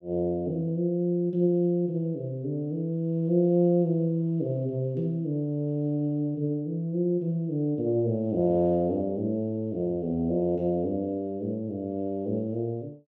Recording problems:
none

